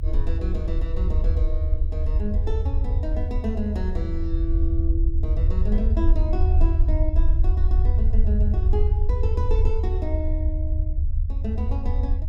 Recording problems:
rumble; below 74 Hz, SNR -9 dB

